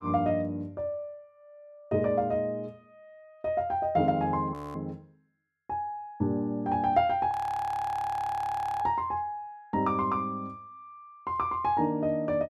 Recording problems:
frozen audio; at 4.5 s and at 7.5 s for 1.5 s

